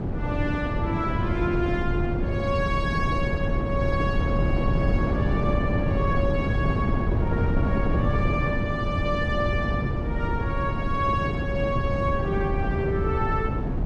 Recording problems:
wind on the microphone; below 240 Hz, SNR -2 dB

